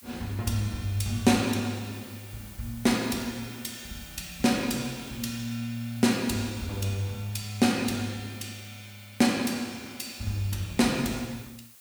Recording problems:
background hiss; slope +1 dB per octave, SNR 20 dB

